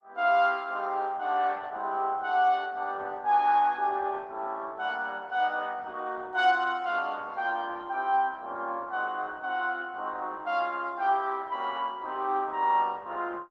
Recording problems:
lossy compression; Opus, log-spectral distance 2 dB

